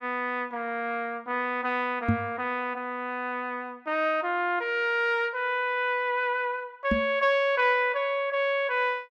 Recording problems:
knock on the microphone; at 2 s and at 7 s; peak +6 dB vs average level

